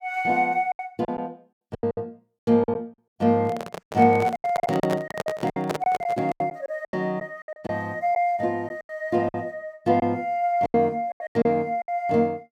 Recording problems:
lost packets; 13% of the sound replaced, filled with silence
microphone handling noise; from 3.5 to 6.5 s; peak 0 dB vs average level

